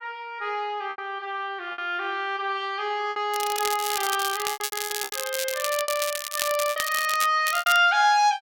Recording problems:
lost packets; 9% of the sound replaced, filled with repeated pitch periods
crackle; from 3.5 to 7.5 s and at 7.5 s; loose cable, SNR 5 dB

